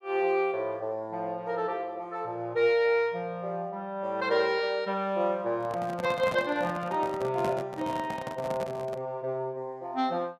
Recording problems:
handling noise; from 5.5 to 9 s; peak -2 dB vs average level

